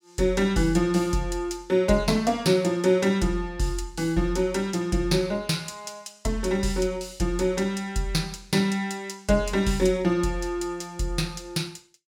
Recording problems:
none

